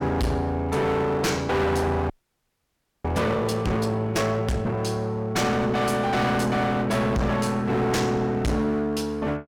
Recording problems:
distorted audio; hard clipping, uneven, signal-to-distortion ratio 5 dB
audio freezing; at 2 s for 1 s

